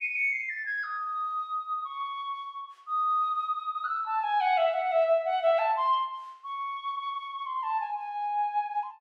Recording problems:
none

